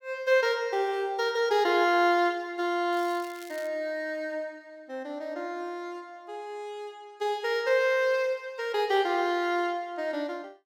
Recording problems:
crackle; at 3 s; loose cable, SNR 22 dB

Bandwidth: 17 kHz